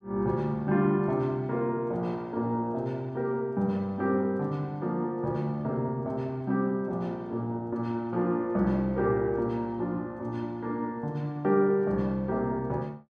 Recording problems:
none

